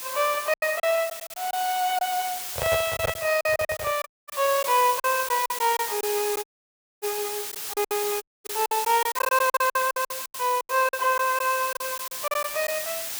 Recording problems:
hiss; slope +2 dB per octave, SNR 6 dB
lost packets; 13% of the sound replaced, filled with silence
microphone handling noise; from 2.5 to 4 s; peak +1 dB vs average level
dropout; at 4 s, at 6.5 s for 0.5 s and at 8 s

